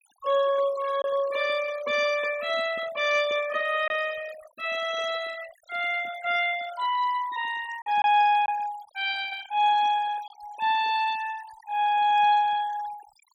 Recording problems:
denoising artefacts; signal-to-artefact ratio 16 dB
lost packets; 1.1% of the sound replaced, filled with silence

